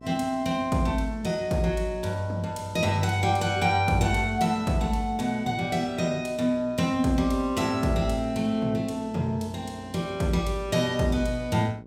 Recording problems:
hum; 60 Hz, harmonics up to 1 kHz, SNR 21 dB

